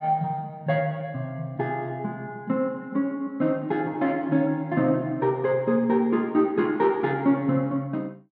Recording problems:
none

